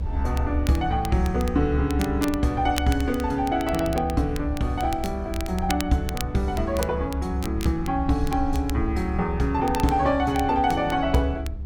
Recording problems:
hum; 50 Hz, harmonics up to 900 Hz, SNR 21 dB
low-frequency rumble; below 72 Hz, strongest tone 70 Hz, SNR 7 dB
crackle; vinyl, SNR 15 dB

